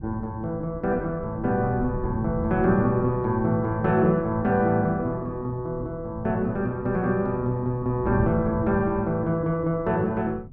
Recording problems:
wind on the microphone; below 160 Hz, SNR 13 dB

